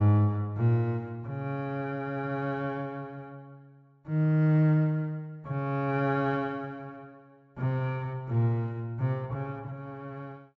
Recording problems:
low-pass filter; nothing above 7.5 kHz

